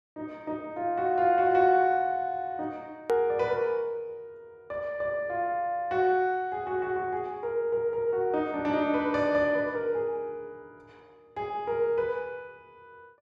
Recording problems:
click at an edit; at 3 s

